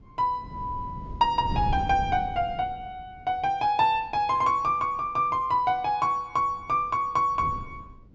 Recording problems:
low-pass filter; nothing above 8 kHz
wind on the microphone; below 170 Hz, SNR 11 dB

